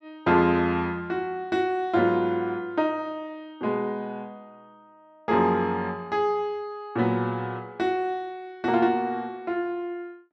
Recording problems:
none

